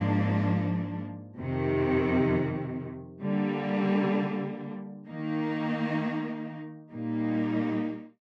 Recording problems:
none

